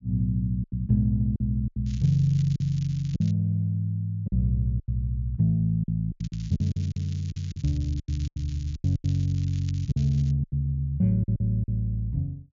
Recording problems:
treble missing; nothing above 7.2 kHz
packet loss; 11% of the sound replaced, filled with silence
crackle; from 2 to 3.5 s and from 6 to 10 s; loose cable, SNR 24 dB

